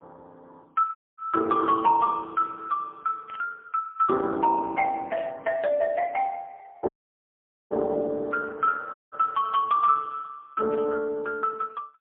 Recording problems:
phone line; 260 Hz to 2.5 kHz, AMR-NB, then MP3
dropout; at 1 s, at 7 s for 1 s and at 9 s
static burst; at 3.5 s, at 5 s and at 11 s; peak -14 dB vs average level

